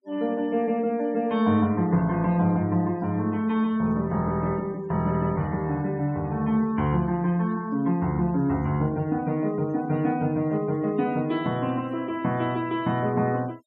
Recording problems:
noise reduction artefacts; signal-to-artefact ratio 25 dB

